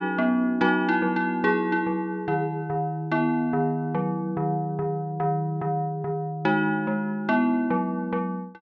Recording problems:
none

